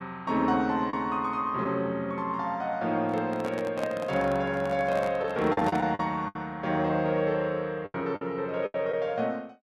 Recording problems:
lost packets; 5% of the sound replaced, filled with the last packet
microphone handling noise; from 3 to 6 s; peak -4 dB vs average level

